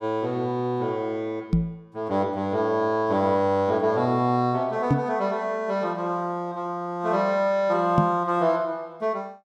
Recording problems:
knock on the microphone; at 1.5 s, at 5 s and at 8 s; peak +7 dB vs average level

